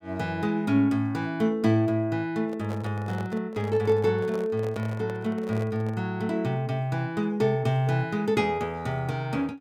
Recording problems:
handling noise; from 2.5 to 6 s; peak -8 dB vs average level

